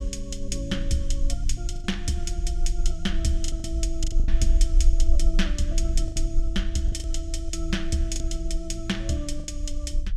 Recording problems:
rumble; below 44 Hz, strongest tone 24 Hz, SNR -2 dB
lost packets; 6% of the sound replaced, filled with the last packet

